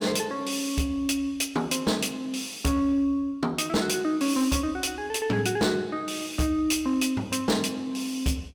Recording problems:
distortion; hard clipping, signal-to-distortion ratio 12 dB

